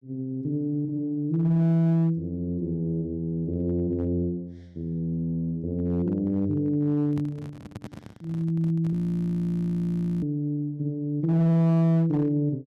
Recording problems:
distorted audio; hard clipping, signal-to-distortion ratio 11 dB
microphone handling noise; from 7 to 9 s; peak -7 dB vs average level
audio freezing; at 9 s for 1.5 s

